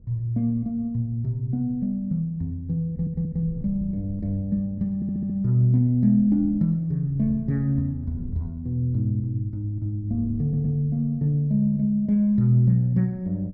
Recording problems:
wind noise; below 150 Hz, SNR 19 dB
stutter; at 3 s, at 5 s and at 10 s

